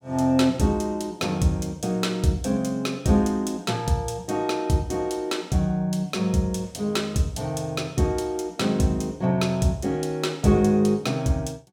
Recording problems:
none

